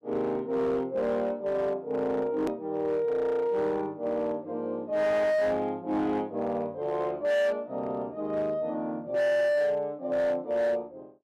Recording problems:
distortion; hard clipping, signal-to-distortion ratio 11 dB
hard cut with a click; at 2.5 s

